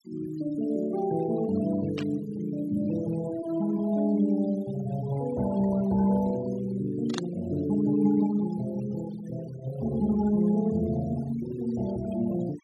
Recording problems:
denoising artefacts; signal-to-artefact ratio 17 dB
burst of static; at 2 s and at 7 s; peak -3 dB vs average level

